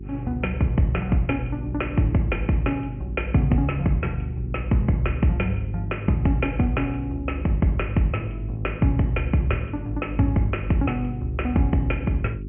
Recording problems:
treble missing; nothing above 3 kHz
hum; 50 Hz, harmonics up to 400 Hz, SNR 12 dB

